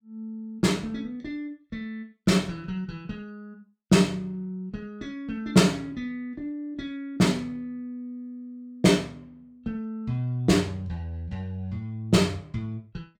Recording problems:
none

